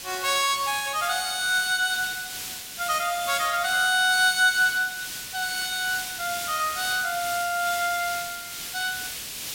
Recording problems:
background hiss; SNR 9 dB

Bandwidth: 16.5 kHz